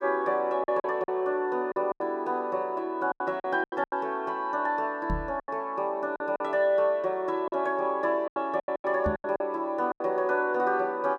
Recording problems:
lost packets; 10% of the sound replaced, filled with silence
microphone bump; at 5 s and at 9 s; peak 0 dB vs average level

